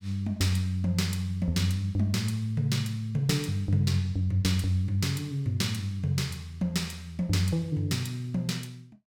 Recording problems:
none

